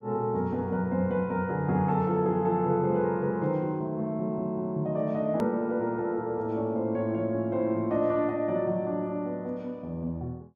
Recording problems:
hard cut with a click; at 5.5 s

